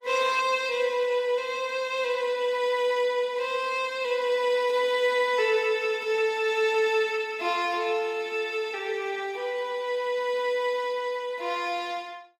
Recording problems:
codec artefacts; Opus, log-spectral distance 3 dB

